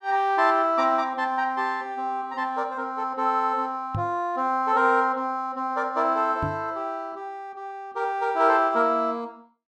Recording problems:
knock on the microphone; at 4 s and at 6.5 s; peak -2 dB vs average level

